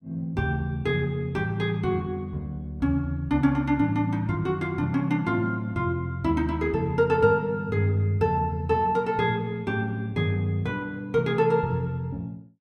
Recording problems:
none

